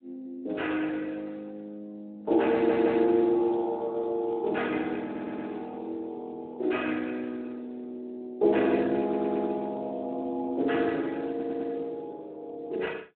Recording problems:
phone line; 300 Hz to 3.8 kHz, Speex
stutter; 4 times, first at 2.5 s

